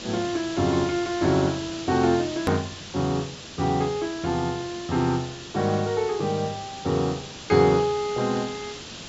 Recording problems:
treble missing; nothing above 8 kHz
background hiss; SNR 12 dB
hard cut with a click; at 2.5 s

